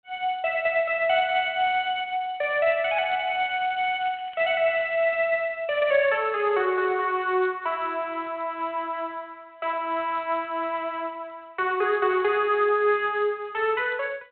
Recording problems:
telephone audio; 370 Hz to 3.3 kHz, G.726
crackle; from 3.5 to 4.5 s; loose cable, SNR 27 dB

